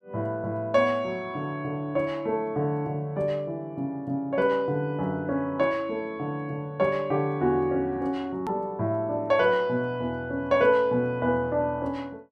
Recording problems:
click at an edit; at 8.5 s

